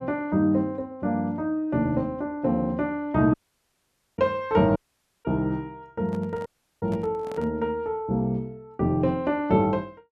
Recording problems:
dropout; at 3.5 s for 1 s, at 5 s and at 6.5 s
microphone handling noise; from 6 to 7.5 s; peak -10 dB vs average level

